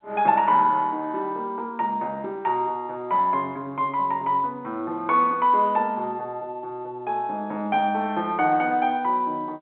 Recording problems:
phone line; 280 Hz to 3.6 kHz, G.711

